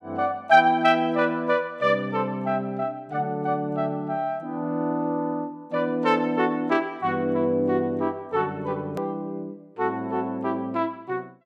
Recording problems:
hard cut with a click; at 9 s

